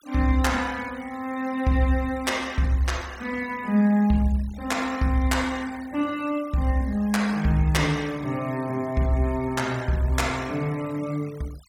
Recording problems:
noise reduction artefacts; signal-to-artefact ratio 21 dB

